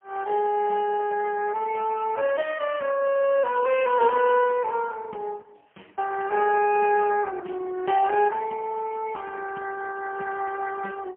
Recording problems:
telephone audio; 220 Hz to 2.9 kHz, AMR-NB, then MP3

